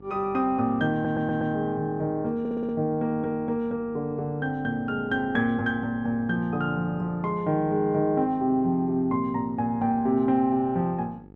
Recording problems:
hum; 50 Hz, harmonics up to 950 Hz, SNR 22 dB
stutter; at 1 s and at 2.5 s

